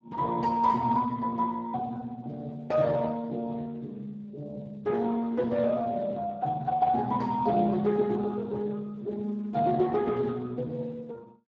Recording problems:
lossy compression; Speex, log-spectral distance 2 dB

